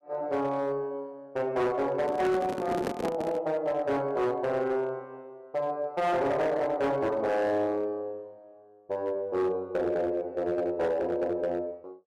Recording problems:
distortion; hard clipping, signal-to-distortion ratio 11 dB
microphone handling noise; from 2 to 3.5 s; peak +1 dB vs average level

